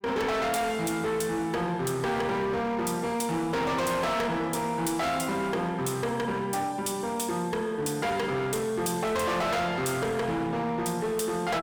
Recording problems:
distortion; hard clipping, signal-to-distortion ratio 6 dB

